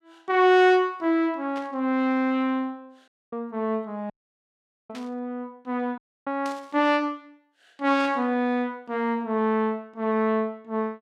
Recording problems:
static burst; 4 times, first at 1.5 s; peak -12 dB vs average level
audio cutting out; at 3 s, at 4 s for 1 s and at 6 s

